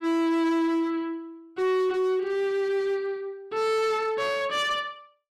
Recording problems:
distorted audio; hard clipping, signal-to-distortion ratio 8 dB

